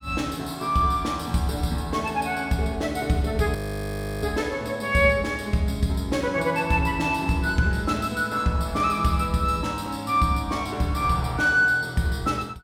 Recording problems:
audio freezing; at 3.5 s for 0.5 s

